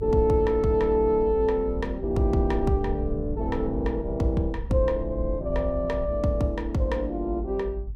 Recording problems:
low-frequency rumble; below 72 Hz, SNR 8 dB

